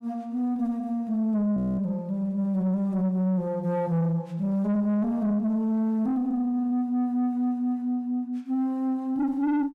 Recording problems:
distortion; soft clipping, signal-to-distortion ratio 10 dB
frozen audio; at 1.5 s

